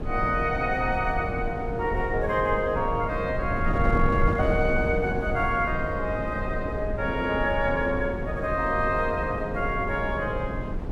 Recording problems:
wind on the microphone; below 230 Hz, SNR 5 dB

